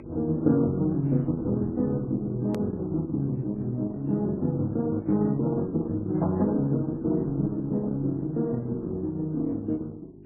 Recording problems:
lossy compression; Opus, then MP3, log-spectral distance 2 dB, nothing above 13.1 kHz
hum; 50 Hz, harmonics up to 450 Hz, SNR 18 dB
edit click; at 2.5 s

